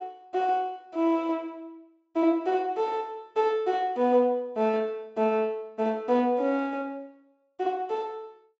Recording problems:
treble missing; nothing above 8 kHz

